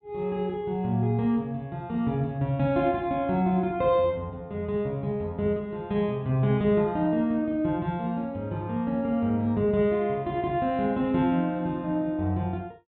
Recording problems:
low-pass filter; nothing above 4 kHz

